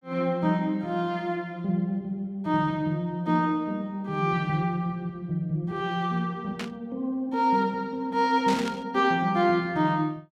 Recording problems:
burst of static; at 6.5 s and at 8.5 s; peak -4 dB vs average level

